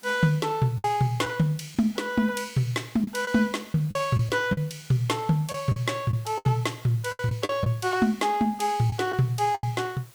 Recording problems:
hiss; slope -2 dB per octave, SNR 25 dB
packet loss; 7% of the sound replaced, filled with the last packet

